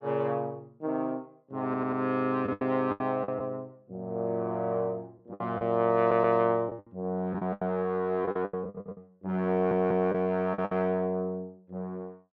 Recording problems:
packet loss; 8% of the sound replaced, filled with the last packet
audio stuttering; 4 times, first at 1.5 s

